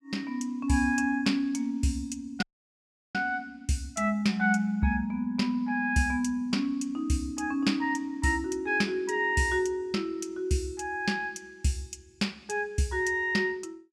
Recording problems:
audio cutting out; at 2.5 s for 0.5 s

